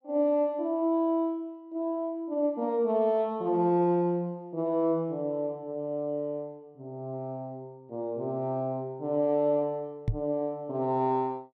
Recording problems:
microphone thump; at 10 s; peak +4 dB vs average level

